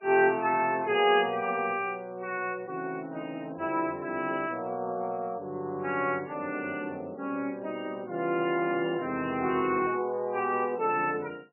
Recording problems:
lossy codec; MP3, log-spectral distance 3 dB, nothing above 2.4 kHz

